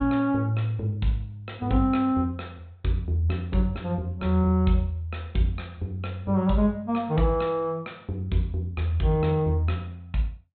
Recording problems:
low-pass filter; nothing above 4 kHz

